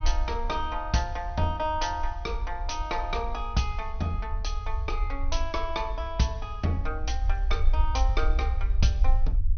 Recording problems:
treble missing; nothing above 6.3 kHz
low-frequency rumble; below 56 Hz, SNR 1 dB

